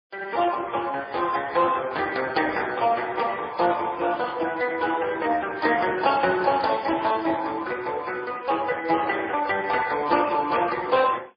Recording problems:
lossy codec; Speex, then MP3, log-spectral distance 4 dB, nothing above 4.5 kHz

